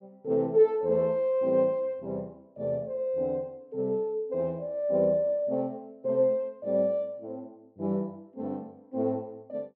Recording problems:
none

